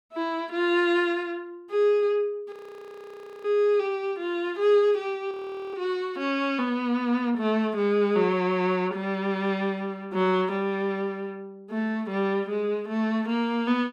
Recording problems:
frozen audio; at 2.5 s for 1 s and at 5.5 s

